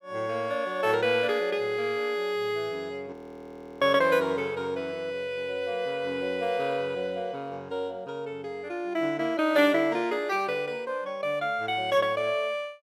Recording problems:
audio freezing; at 3 s for 0.5 s

